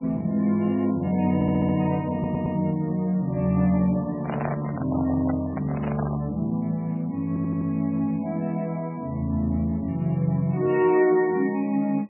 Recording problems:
lossy compression; MP3, then MP3, log-spectral distance 2 dB, nothing above 2.6 kHz
stutter; at 1.5 s, at 2 s and at 7.5 s
microphone handling noise; from 4 to 6.5 s; peak -2 dB vs average level

